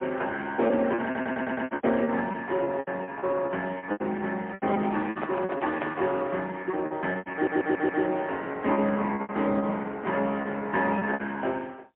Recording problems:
telephone audio; 170 Hz to 3.4 kHz, AMR-NB, then MP3
lost packets; 15% of the sound replaced, filled with repeated pitch periods
stutter; at 1 s and at 7.5 s
handling noise; from 4.5 to 6 s; peak +1 dB vs average level

